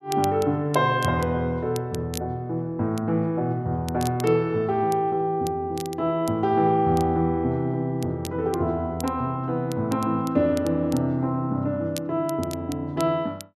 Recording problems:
crackling; vinyl, SNR 18 dB

